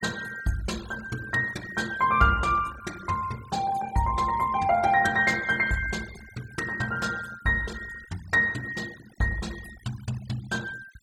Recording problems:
denoising artefacts; signal-to-artefact ratio 19 dB

